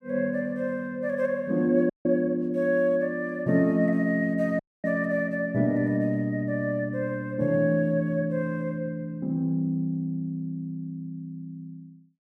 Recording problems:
audio cutting out; at 2 s and at 4.5 s

